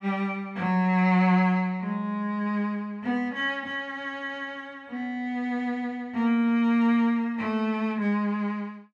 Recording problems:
none

